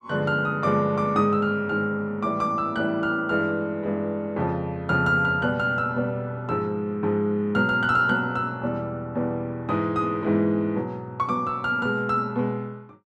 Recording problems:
none

